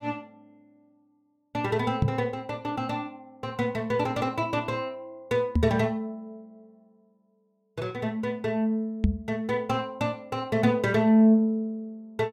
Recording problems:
microphone thump; at 2 s, at 5.5 s and at 9 s; peak +7 dB vs average level

